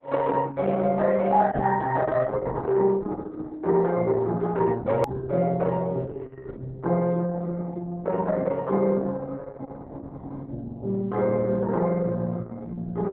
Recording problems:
lossy compression; Opus, log-spectral distance 3 dB, nothing above 13.1 kHz
edit click; at 5 s

